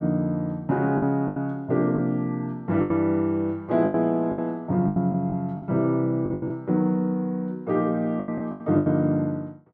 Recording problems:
packet loss; 10% of the sound replaced, filled with the last packet

